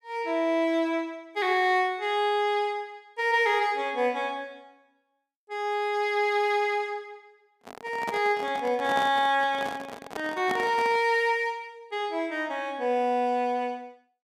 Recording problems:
handling noise; from 7.5 to 11 s; peak -2 dB vs average level

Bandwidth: 15 kHz